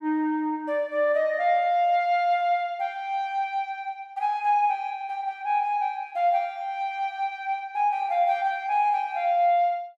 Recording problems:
none

